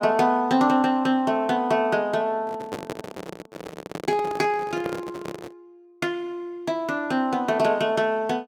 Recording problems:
microphone handling noise; from 2.5 to 5.5 s; peak -3 dB vs average level

